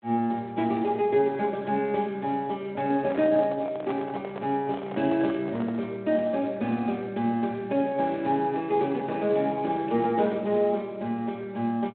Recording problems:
phone line; 170 Hz to 3.7 kHz, Speex
handling noise; from 3 to 6 s; peak -5 dB vs average level

